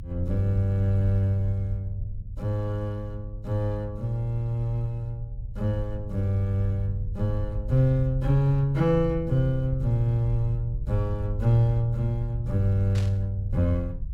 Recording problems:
rumble; below 84 Hz, SNR 9 dB
static burst; at 13 s; peak -10 dB vs average level

